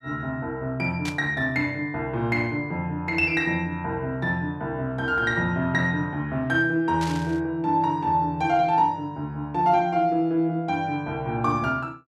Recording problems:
static burst; at 1 s and at 7 s; peak -5 dB vs average level

